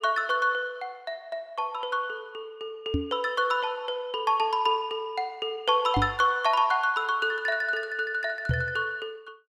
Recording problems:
microphone bump; at 3 s, at 6 s and at 8.5 s; peak +4 dB vs average level

